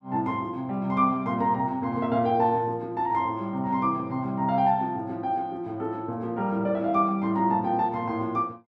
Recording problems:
none

